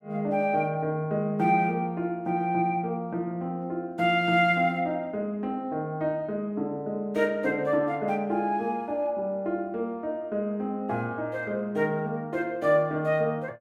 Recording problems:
none

